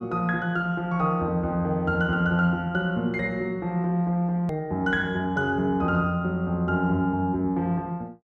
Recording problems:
hard cut with a click; at 4.5 s

